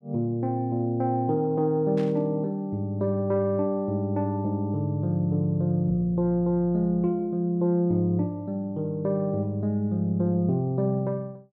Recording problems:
burst of static; at 2 s; peak -14 dB vs average level

